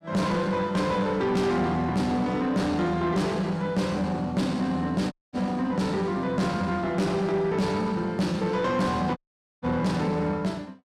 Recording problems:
distortion; soft clipping, signal-to-distortion ratio 11 dB
audio cutting out; at 5 s and at 9 s

